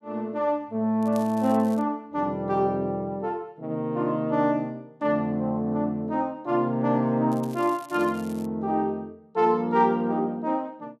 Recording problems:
crackling; at 1 s and from 7.5 to 8.5 s; loose cable, SNR 24 dB

